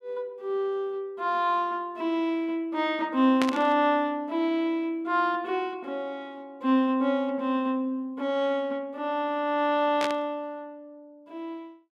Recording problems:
burst of static; at 3.5 s and at 10 s; peak +1 dB vs average level

